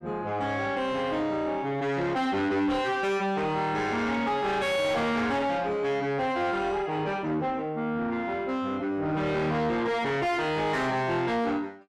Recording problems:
distorted audio; soft clipping, signal-to-distortion ratio 7 dB

